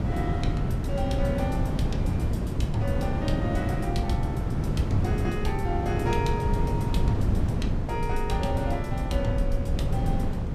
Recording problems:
rumble; below 82 Hz, SNR 4 dB
wind on the microphone; below 230 Hz, SNR -3 dB

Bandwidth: 15 kHz